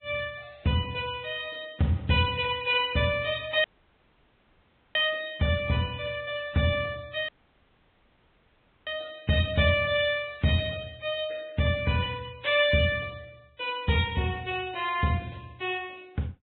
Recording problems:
treble missing; nothing above 3.6 kHz
codec artefacts; Vorbis, log-spectral distance 5 dB
dropout; at 3.5 s for 1.5 s and at 7.5 s for 1.5 s

